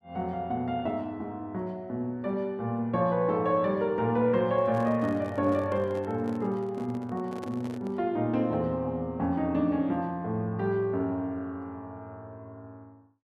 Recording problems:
microphone handling noise; from 4.5 to 8 s; peak -8 dB vs average level

